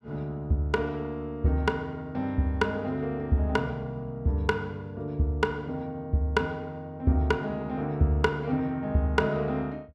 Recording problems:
none

